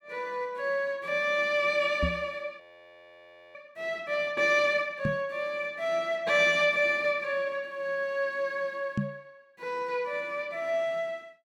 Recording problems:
knock on the microphone; at 2 s, at 5 s and at 9 s; peak +3 dB vs average level
audio freezing; at 2.5 s for 1 s

